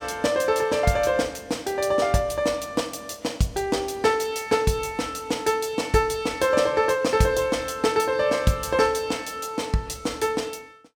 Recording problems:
none

